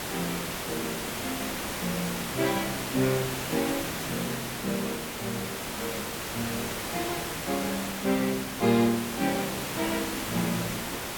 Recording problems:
background hiss; slope -3 dB per octave, SNR 1 dB

